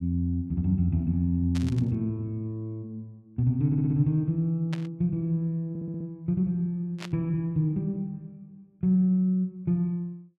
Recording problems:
static burst; at 1.5 s, at 4.5 s and at 7 s; peak -8 dB vs average level
audio stuttering; at 3.5 s and at 5.5 s

